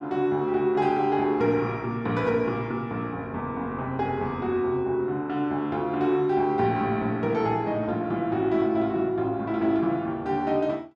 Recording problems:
none

